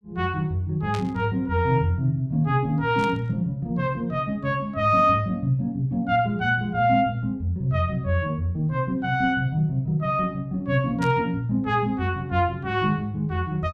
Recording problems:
burst of static; at 1 s, at 3 s and at 11 s; peak -8 dB vs average level

